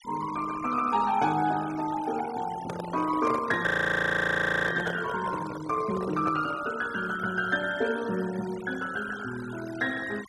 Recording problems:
denoising artefacts; signal-to-artefact ratio 16 dB
microphone handling noise; from 2.5 to 6.5 s; peak -2 dB vs average level
frozen audio; at 3.5 s for 1 s

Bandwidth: 12 kHz